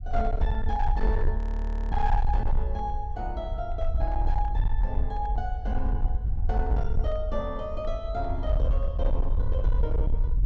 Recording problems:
treble cut off; nothing above 8 kHz
distorted audio; hard clipping, uneven, signal-to-distortion ratio 11 dB
rumble; below 60 Hz, SNR -4 dB
frozen audio; at 1.5 s for 0.5 s

